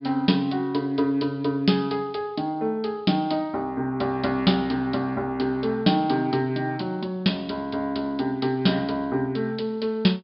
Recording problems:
low-pass filter; nothing above 5.2 kHz

